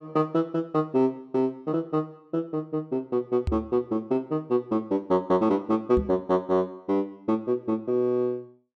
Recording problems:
knock on the microphone; at 3.5 s and at 6 s; peak +2 dB vs average level

